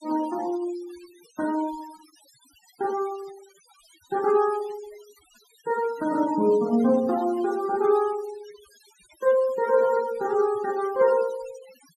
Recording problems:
noise reduction artefacts; signal-to-artefact ratio 20 dB

